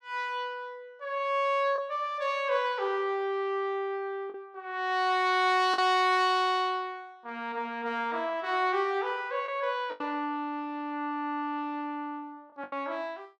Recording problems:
packet loss; 2% of the sound replaced, filled with the last packet

